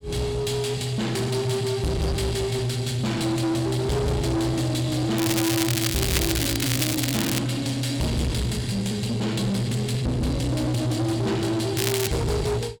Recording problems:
distortion; soft clipping, signal-to-distortion ratio 8 dB
crackling; from 5 to 7.5 s and at 12 s; loose cable, SNR 2 dB

